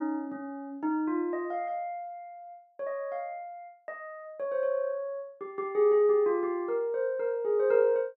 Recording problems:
none

